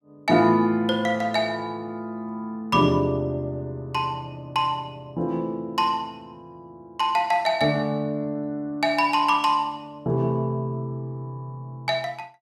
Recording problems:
none

